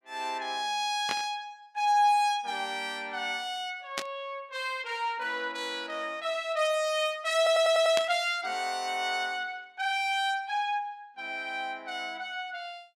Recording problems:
burst of static; at 1 s, at 4 s and at 8 s; peak +2 dB vs average level
audio stuttering; at 7.5 s

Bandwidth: 16.5 kHz